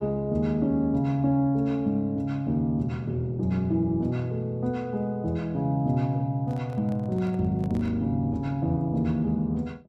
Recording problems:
handling noise; from 6.5 to 8 s; peak -12 dB vs average level

